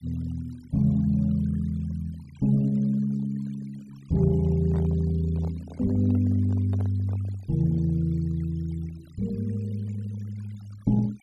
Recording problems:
noise reduction artefacts; signal-to-artefact ratio 27 dB
microphone handling noise; from 4 to 7.5 s; peak -12 dB vs average level

